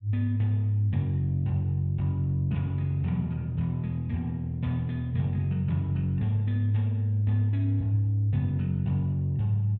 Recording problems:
none

